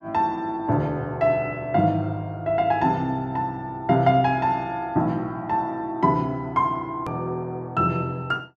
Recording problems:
edit click; at 7 s

